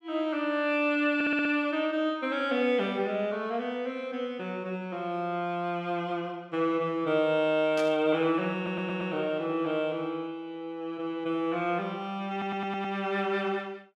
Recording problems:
audio stuttering; at 1 s, at 8.5 s and at 12 s
burst of static; at 8 s; peak -7 dB vs average level

